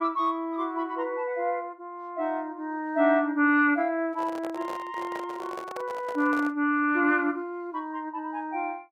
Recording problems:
microphone handling noise; from 4 to 6.5 s; peak -7 dB vs average level

